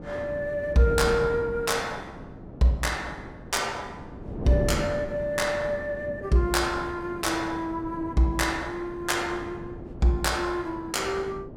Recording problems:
wind on the microphone; below 380 Hz, SNR 11 dB

